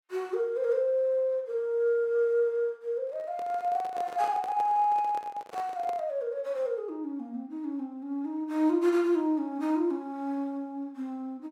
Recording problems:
microphone handling noise; from 3 to 6 s; peak -8 dB vs average level

